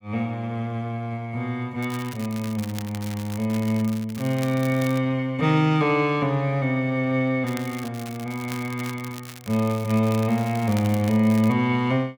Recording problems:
crackle; from 2 to 5 s and from 7.5 to 12 s; loose cable, SNR 17 dB

